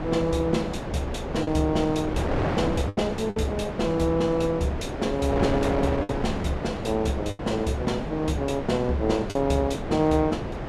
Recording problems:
wind on the microphone; below 700 Hz, SNR 4 dB
packet loss; 3% of the sound replaced, filled with the last packet

